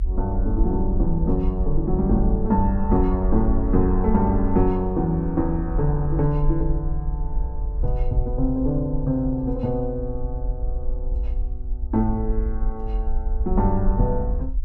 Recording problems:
rumble; below 52 Hz, SNR 4 dB

